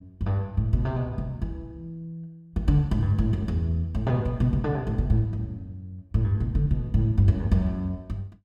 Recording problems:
none

